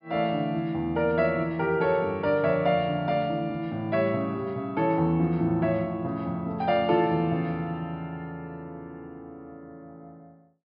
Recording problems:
treble missing; nothing above 5.5 kHz

